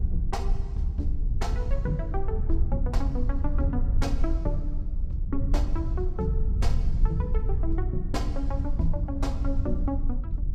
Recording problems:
low-frequency rumble; below 62 Hz, SNR -4 dB

